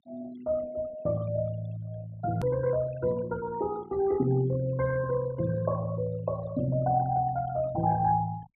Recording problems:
treble missing; nothing above 4 kHz
noise reduction artefacts; signal-to-artefact ratio 19 dB
edit click; at 2.5 s

